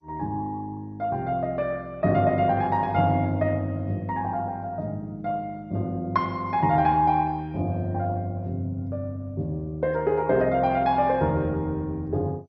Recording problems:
lossy codec; MP2, log-spectral distance 2 dB, nothing above 5.5 kHz

